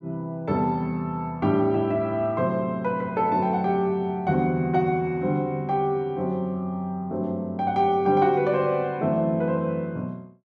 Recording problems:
none

